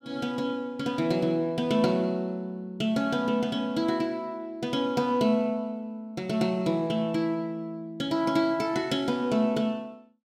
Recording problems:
none

